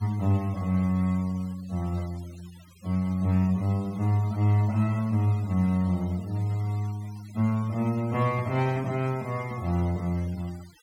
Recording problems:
denoising artefacts; signal-to-artefact ratio 23 dB

